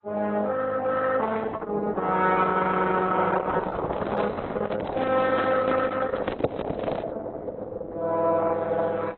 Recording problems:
lossy compression; Opus, then AAC, log-spectral distance 4 dB, nothing above 3.7 kHz
handling noise; from 3.5 to 7 s; peak +7 dB vs average level
audio freezing; at 4.5 s

